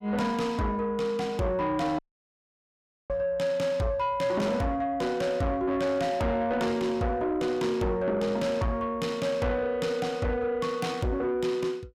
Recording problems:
distorted audio; soft clipping, signal-to-distortion ratio 10 dB
dropout; at 2 s for 1 s

